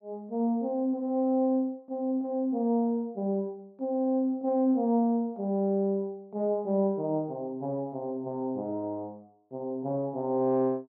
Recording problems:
none

